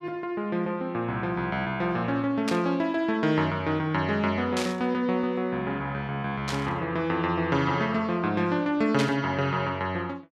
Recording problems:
burst of static; 4 times, first at 2.5 s; peak 0 dB vs average level

